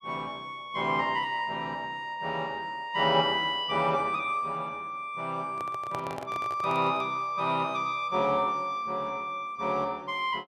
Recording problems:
handling noise; from 5.5 to 7 s; peak -4 dB vs average level

